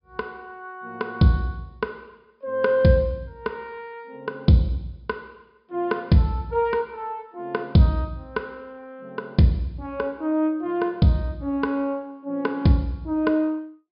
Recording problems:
low-pass filter; nothing above 5.5 kHz

